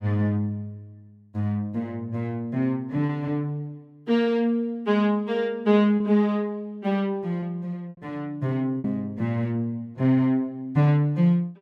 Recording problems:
packet loss; 2% of the sound replaced, filled with repeated pitch periods

